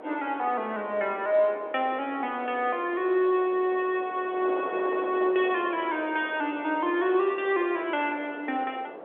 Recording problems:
telephone audio; 320 Hz to 3.5 kHz, G.711
wind on the microphone; below 760 Hz, SNR 13 dB

